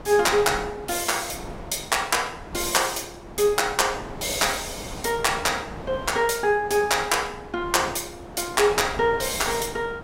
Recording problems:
wind on the microphone; below 810 Hz, SNR 15 dB

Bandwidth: 16 kHz